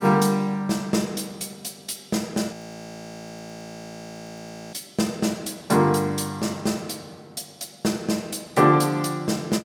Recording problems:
audio freezing; at 2.5 s for 2 s

